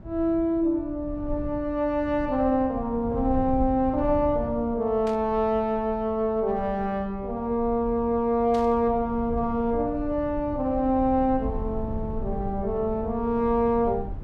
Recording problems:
rumble; below 120 Hz, SNR 13 dB
burst of static; at 5 s and at 8.5 s; peak -13 dB vs average level

